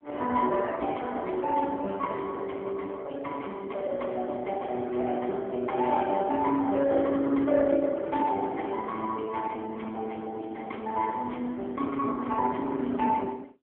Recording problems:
telephone audio; 240 Hz to 3.2 kHz, AMR-NB

